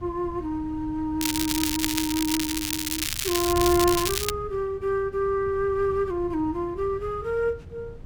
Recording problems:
wind on the microphone; below 140 Hz, SNR 13 dB
crackle; from 1 to 4.5 s; loose cable, SNR 1 dB

